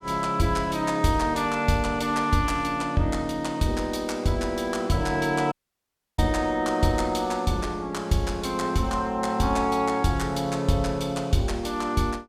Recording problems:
dropout; at 5.5 s for 0.5 s

